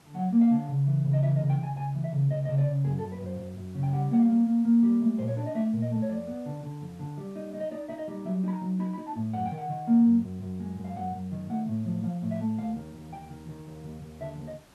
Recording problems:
background hiss; slope -4 dB per octave, SNR 30 dB

